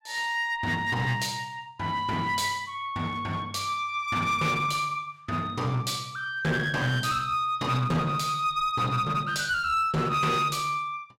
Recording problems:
distortion; hard clipping, uneven, signal-to-distortion ratio 9 dB

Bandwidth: 16 kHz